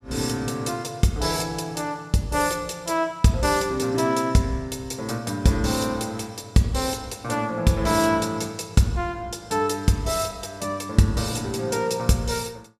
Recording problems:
none

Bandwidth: 14.5 kHz